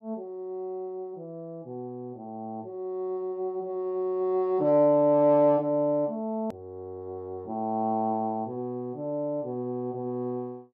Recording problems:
hard cut with a click; at 6.5 s

